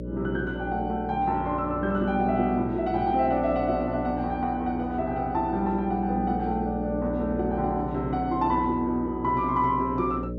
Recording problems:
electrical hum; 60 Hz, harmonics up to 600 Hz, SNR 8 dB

